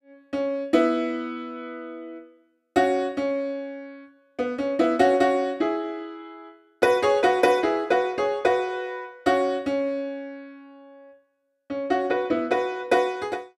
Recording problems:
none

